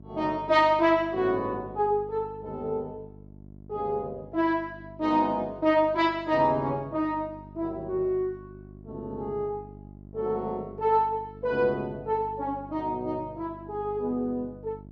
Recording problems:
electrical hum; 50 Hz, harmonics up to 700 Hz, SNR 19 dB

